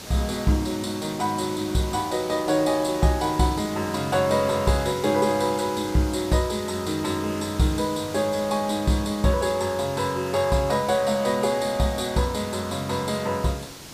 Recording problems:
hiss; slope -2 dB per octave, SNR 14 dB

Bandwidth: 15 kHz